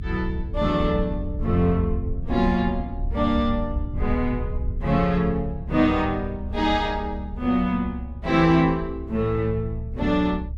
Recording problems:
low-frequency rumble; below 78 Hz, SNR 8 dB

